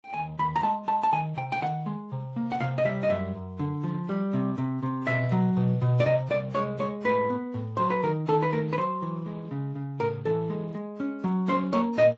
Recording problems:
lossy codec; Speex, then AAC, log-spectral distance 2 dB, nothing above 7.6 kHz

